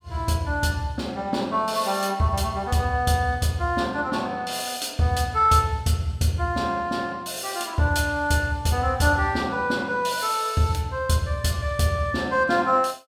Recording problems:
none

